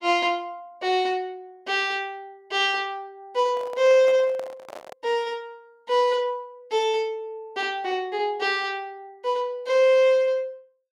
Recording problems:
microphone handling noise; from 3.5 to 5 s; peak -10 dB vs average level

